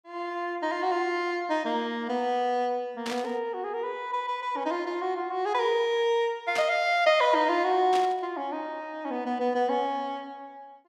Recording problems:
static burst; at 3 s, at 6.5 s and at 8 s; peak -3 dB vs average level

